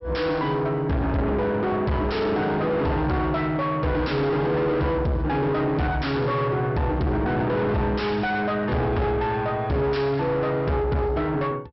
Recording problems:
treble missing; nothing above 5.6 kHz
distortion; soft clipping, signal-to-distortion ratio 6 dB

